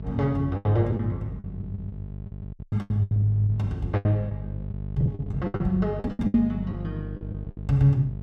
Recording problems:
hum; 50 Hz, harmonics up to 600 Hz, SNR 10 dB
lost packets; 15% of the sound replaced, filled with the last packet

